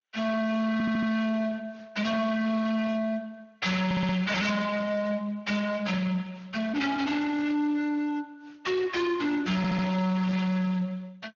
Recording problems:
codec artefacts; MP2, then Speex, log-spectral distance 4 dB, nothing above 6.7 kHz
distorted audio; hard clipping, signal-to-distortion ratio 6 dB
audio stuttering; at 0.5 s, at 4 s and at 9.5 s

